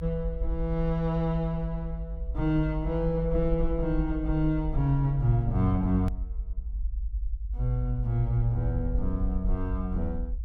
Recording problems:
low-frequency rumble; below 56 Hz, strongest tone 48 Hz, SNR 5 dB
hard cut with a click; at 6 s

